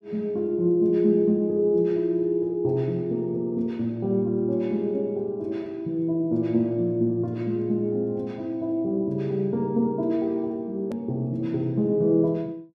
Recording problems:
click at an edit; at 11 s

